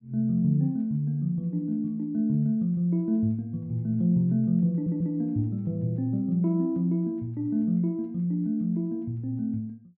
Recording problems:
audio stuttering; at 4.5 s

